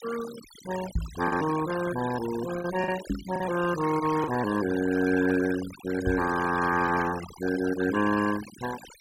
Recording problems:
noise reduction artefacts; signal-to-artefact ratio 12 dB
lost packets; 2% of the sound replaced, filled with the last packet
knock on the microphone; at 1 s, at 3 s and at 6 s; peak +2 dB vs average level

